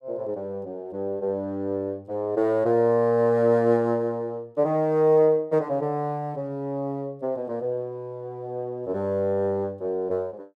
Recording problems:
none

